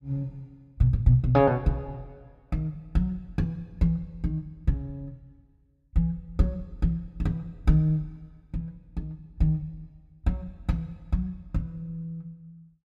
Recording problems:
none

